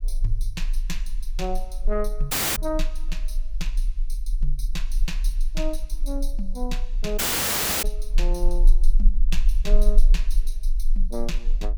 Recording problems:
rumble; below 34 Hz, strongest tone 18 Hz, SNR -6 dB
audio cutting out; at 2.5 s and at 7 s for 0.5 s

